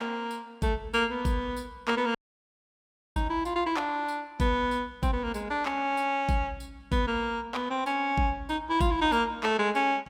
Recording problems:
dropout; at 2 s for 1 s

